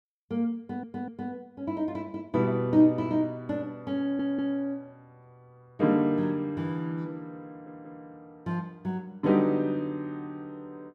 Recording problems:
audio stuttering; at 0.5 s, at 4 s and at 7.5 s

